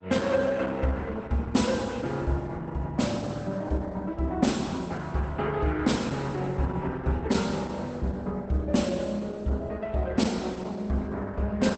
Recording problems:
codec artefacts; Opus, log-spectral distance 3 dB, nothing above 8.2 kHz

